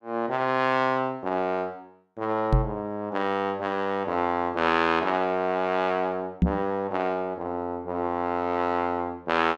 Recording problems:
microphone bump; at 2.5 s and at 6.5 s; peak +9 dB vs average level

